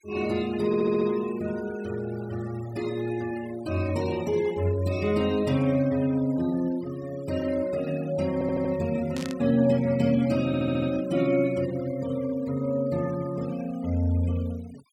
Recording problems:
noise reduction artefacts; signal-to-artefact ratio 19 dB
stutter; at 0.5 s, at 8.5 s and at 10 s
static burst; at 9 s; peak -8 dB vs average level

